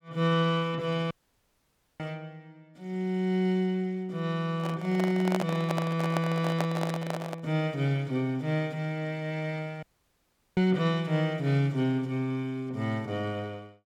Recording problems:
audio cutting out; at 1 s for 1 s and at 10 s for 0.5 s
microphone handling noise; from 4.5 to 7.5 s; peak +3 dB vs average level

